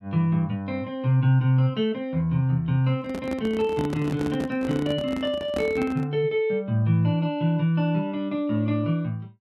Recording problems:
handling noise; from 3 to 6 s; peak -3 dB vs average level

